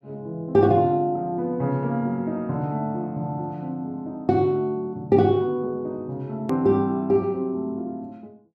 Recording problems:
click at an edit; at 6.5 s

